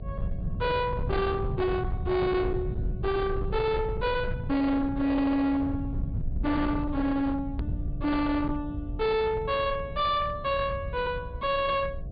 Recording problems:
treble cut off; nothing above 4.7 kHz
distortion; hard clipping, signal-to-distortion ratio 8 dB
hum; 60 Hz, harmonics up to 720 Hz, SNR 23 dB
low-frequency rumble; below 140 Hz, SNR 7 dB
click at an edit; at 7.5 s

